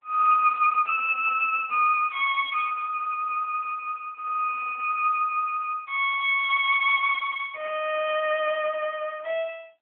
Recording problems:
telephone audio; 540 Hz to 3.3 kHz, AMR-NB

